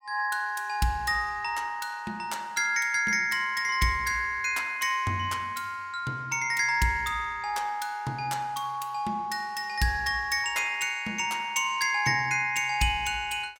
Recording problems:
none

